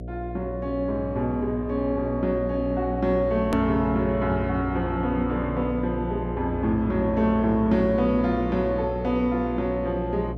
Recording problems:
hum; 60 Hz, harmonics up to 720 Hz, SNR 8 dB
hard cut with a click; at 3.5 s

